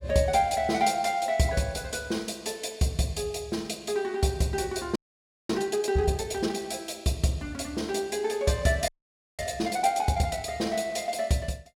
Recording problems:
audio freezing; at 5 s for 0.5 s and at 9 s for 0.5 s

